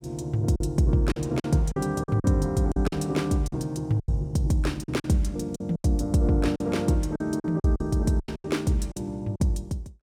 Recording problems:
packet loss; 11% of the sound replaced, filled with silence

